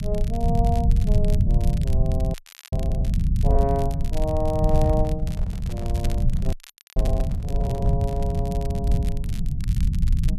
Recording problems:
rumble; below 120 Hz, SNR -6 dB
crackle; vinyl, SNR 15 dB
frozen audio; at 2.5 s and at 6.5 s
microphone handling noise; from 4.5 to 8.5 s; peak -7 dB vs average level

